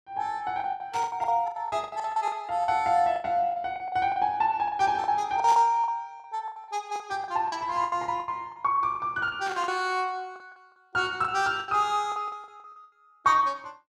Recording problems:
packet loss; 16% of the sound replaced, filled with the last packet
static burst; at 1 s, at 5.5 s and at 9.5 s; peak -8 dB vs average level

